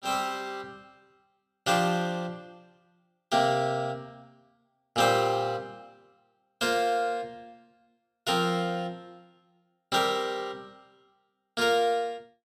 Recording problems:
none

